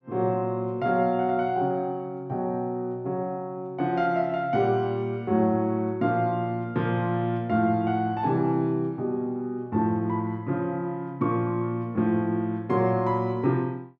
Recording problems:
none

